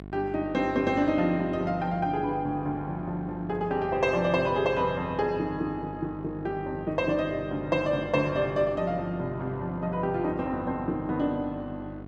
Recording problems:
hum; 50 Hz, harmonics up to 1.1 kHz, SNR 14 dB

